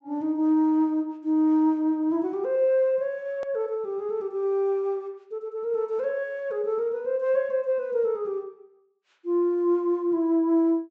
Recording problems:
treble cut off; nothing above 8 kHz
edit click; at 3.5 s

